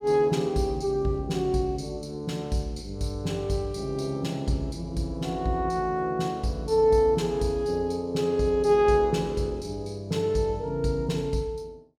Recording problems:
none

